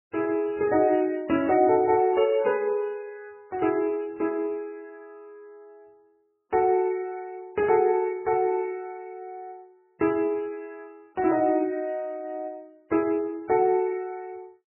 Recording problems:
lossy codec; MP3, log-spectral distance 2 dB, nothing above 2.5 kHz

